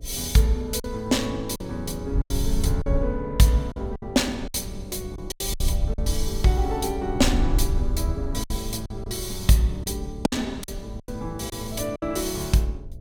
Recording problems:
hum; 60 Hz, harmonics up to 660 Hz, SNR 25 dB
wind on the microphone; below 72 Hz, SNR 6 dB
packet loss; 7% of the sound replaced, filled with silence

